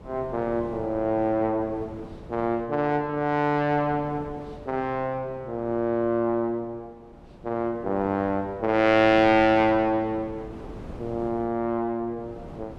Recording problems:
wind on the microphone; below 460 Hz, SNR 19 dB

